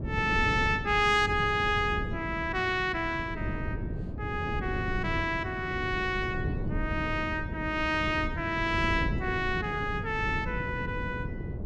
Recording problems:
wind on the microphone; below 220 Hz, SNR 6 dB

